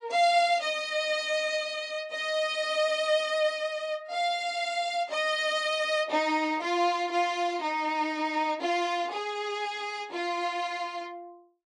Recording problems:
codec artefacts; AAC, log-spectral distance 2 dB, nothing above 10.1 kHz

